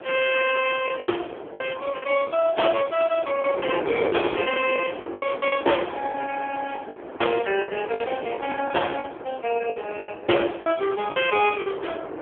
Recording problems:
phone line; 300 Hz to 3.2 kHz, AMR-NB
wind noise; below 750 Hz, SNR 9 dB
lost packets; 9% of the sound replaced, filled with the last packet

